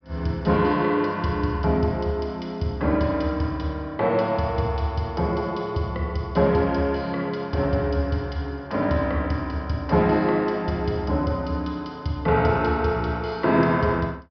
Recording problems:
treble cut off; nothing above 5.5 kHz

